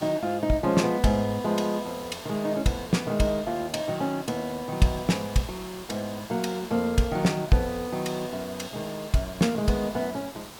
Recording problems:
hiss; slope -3 dB per octave, SNR 16 dB

